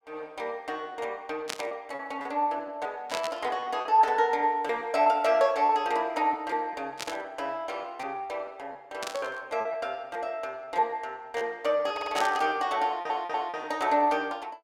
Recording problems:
lost packets; 6% of the sound replaced, filled with repeated pitch periods
burst of static; 5 times, first at 1.5 s; peak 0 dB vs average level
stutter; at 12 s and at 13 s

